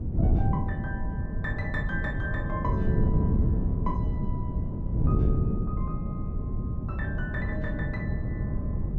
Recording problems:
wind on the microphone; below 170 Hz, SNR -8 dB

